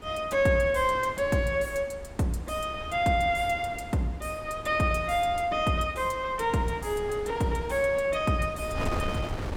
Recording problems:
wind on the microphone; below 570 Hz, SNR 13 dB

